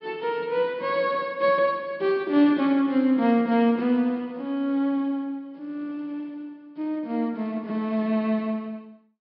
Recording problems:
low-pass filter; nothing above 5.1 kHz

